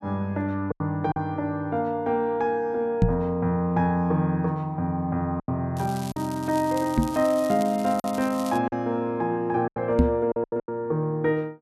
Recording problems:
packet loss; 5% of the sound replaced, filled with silence
knock on the microphone; at 3 s, at 7 s and at 10 s; peak +9 dB vs average level
crackling; from 6 to 8.5 s; loose cable, SNR 17 dB

